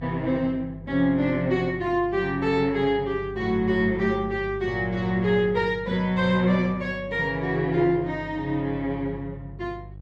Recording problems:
electrical hum; 50 Hz, harmonics up to 500 Hz, SNR 17 dB

